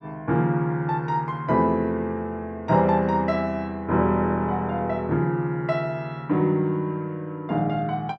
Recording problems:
none

